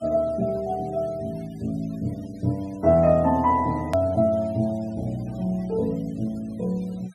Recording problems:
denoising artefacts; signal-to-artefact ratio 26 dB
hard cut with a click; at 4 s

